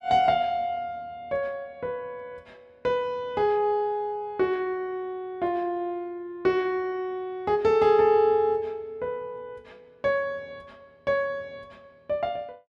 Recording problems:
none

